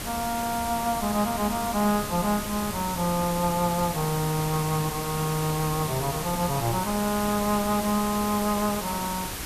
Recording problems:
hiss; slope -2 dB per octave, SNR 6 dB
wind on the microphone; below 210 Hz, SNR 15 dB

